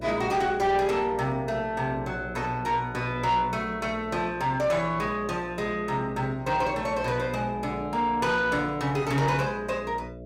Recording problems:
distorted audio; soft clipping, signal-to-distortion ratio 12 dB
hum; 60 Hz, harmonics up to 660 Hz, SNR 14 dB

